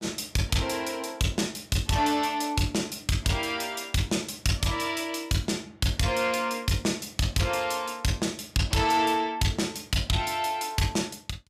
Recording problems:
distortion; soft clipping, signal-to-distortion ratio 11 dB

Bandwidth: 14.5 kHz